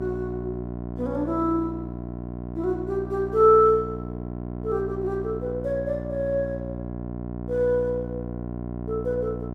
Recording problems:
electrical hum; 60 Hz, harmonics up to 1.1 kHz, SNR 9 dB

